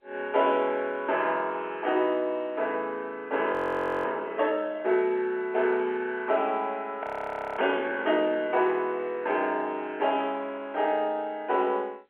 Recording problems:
phone line; 300 Hz to 3.3 kHz, G.711
frozen audio; at 3.5 s for 0.5 s and at 7 s for 0.5 s

